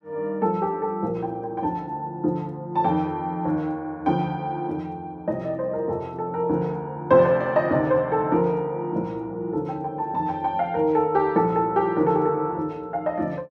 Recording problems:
none

